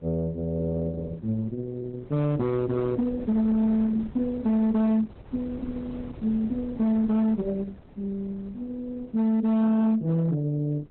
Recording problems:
codec artefacts; Opus, log-spectral distance 2 dB, nothing above 4 kHz
distortion; hard clipping, signal-to-distortion ratio 12 dB
wind on the microphone; below 330 Hz, SNR 20 dB

